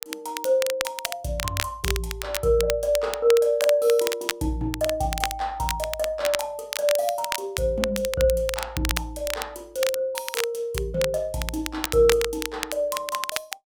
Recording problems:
crackle; vinyl, SNR 6 dB

